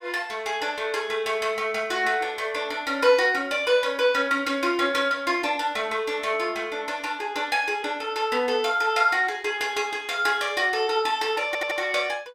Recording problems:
stutter; at 11 s

